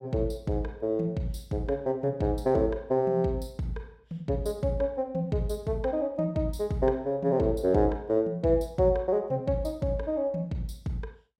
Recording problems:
none

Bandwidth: 16 kHz